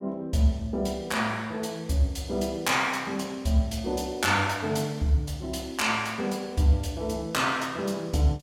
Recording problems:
none

